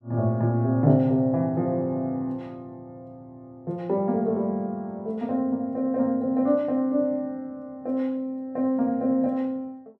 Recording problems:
none

